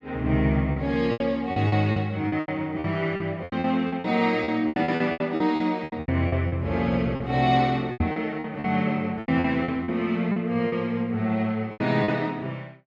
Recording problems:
lost packets; 15% of the sound replaced, filled with repeated pitch periods
microphone bump; at 8 s; peak +4 dB vs average level

